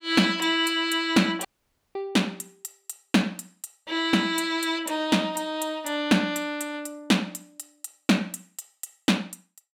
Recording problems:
audio cutting out; at 1.5 s for 0.5 s

